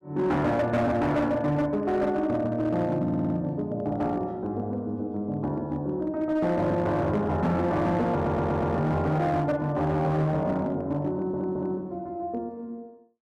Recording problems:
distortion; hard clipping, signal-to-distortion ratio 12 dB
audio stuttering; at 3 s, at 8 s and at 11 s

